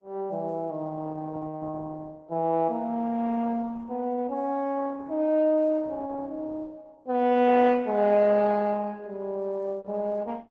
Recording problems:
lossy compression; Opus, log-spectral distance 2 dB

